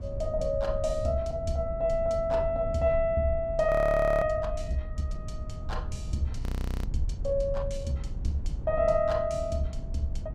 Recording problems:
low-frequency rumble; below 88 Hz, SNR 8 dB
frozen audio; at 3.5 s for 0.5 s and at 6.5 s

